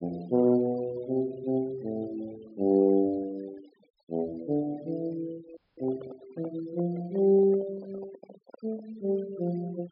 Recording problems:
treble cut off; nothing above 5.5 kHz
noise reduction artefacts; signal-to-artefact ratio 24 dB
microphone handling noise; from 5.5 to 9 s; peak -10 dB vs average level
frozen audio; at 5.5 s

